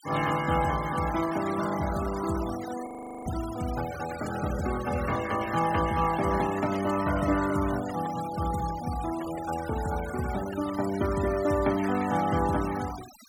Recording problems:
denoising artefacts; signal-to-artefact ratio 13 dB
audio freezing; at 3 s

